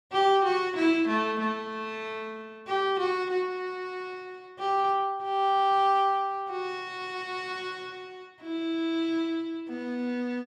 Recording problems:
none

